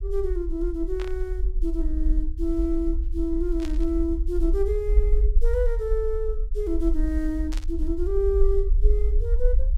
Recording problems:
rumble; below 50 Hz, SNR -1 dB
burst of static; at 1 s, at 3.5 s and at 7.5 s; peak -7 dB vs average level

